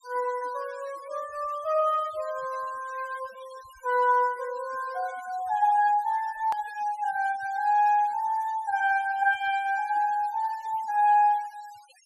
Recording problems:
denoising artefacts; signal-to-artefact ratio 24 dB
click at an edit; at 6.5 s

